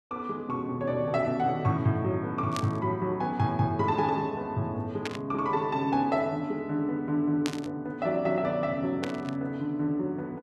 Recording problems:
static burst; 4 times, first at 2.5 s; peak -1 dB vs average level

